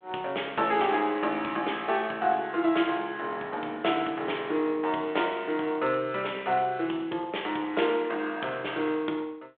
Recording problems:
telephone audio; 260 Hz to 3.5 kHz, G.726

